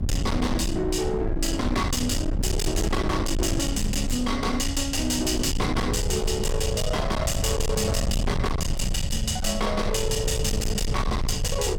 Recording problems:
distorted audio; hard clipping, uneven, signal-to-distortion ratio 7 dB
rumble; below 170 Hz, SNR 3 dB
wind noise; below 670 Hz, SNR 19 dB

